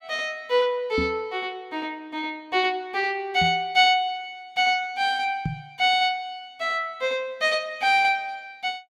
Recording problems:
microphone thump; at 1 s, at 3.5 s and at 5.5 s; peak 0 dB vs average level

